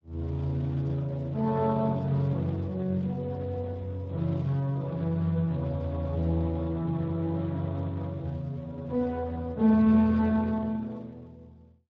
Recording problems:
lossy codec; Speex, log-spectral distance 2 dB

